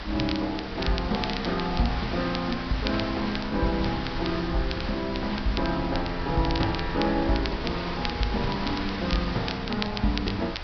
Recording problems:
low-pass filter; nothing above 5.5 kHz
hiss; SNR 7 dB
low-frequency rumble; below 92 Hz, SNR 12 dB
crackling; vinyl, SNR 10 dB

